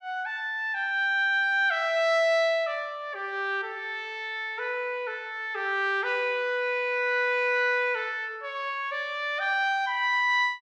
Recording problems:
none

